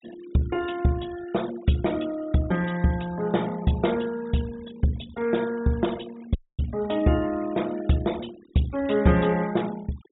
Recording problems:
treble cut off; nothing above 4 kHz
noise reduction artefacts; signal-to-artefact ratio 19 dB
dropout; at 6.5 s

